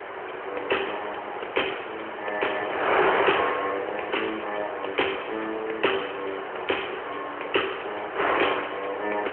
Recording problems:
telephone audio; 320 Hz to 3.2 kHz, AMR-NB
wind on the microphone; below 1.7 kHz, SNR 1 dB

